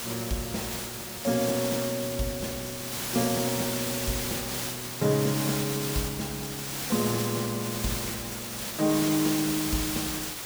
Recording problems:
background hiss; slope -1 dB per octave, SNR 2 dB

